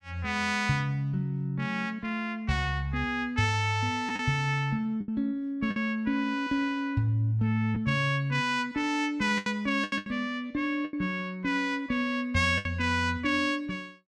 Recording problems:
packet loss; 4% of the sound replaced, filled with the last packet

